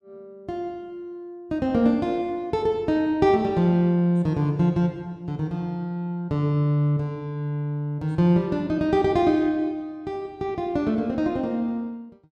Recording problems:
none

